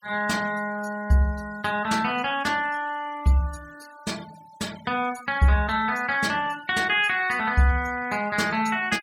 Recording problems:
noise reduction artefacts; signal-to-artefact ratio 21 dB

